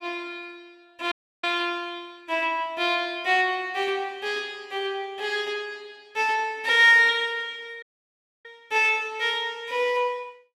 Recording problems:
audio cutting out; at 1 s and at 8 s for 0.5 s

